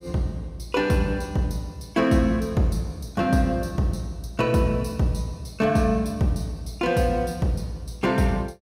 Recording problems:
none

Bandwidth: 15.5 kHz